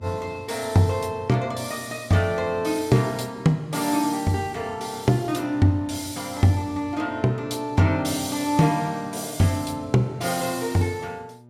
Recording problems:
hum; 60 Hz, harmonics up to 960 Hz, SNR 24 dB

